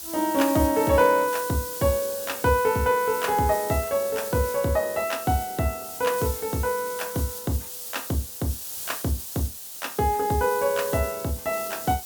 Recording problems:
background hiss; SNR 9 dB

